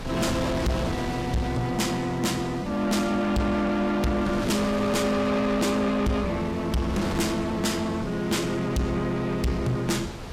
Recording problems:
lossy compression; Vorbis, log-spectral distance 3 dB, nothing above 15.1 kHz
distorted audio; soft clipping, signal-to-distortion ratio 8 dB
wind on the microphone; below 1.2 kHz, SNR 9 dB

